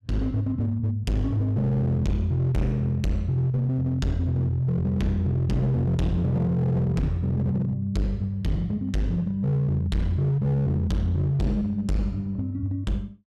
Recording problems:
distorted audio; hard clipping, signal-to-distortion ratio 8 dB

